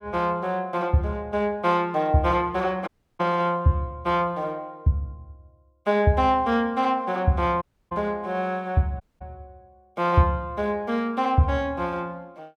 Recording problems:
audio cutting out; at 3 s, at 7.5 s and at 9 s

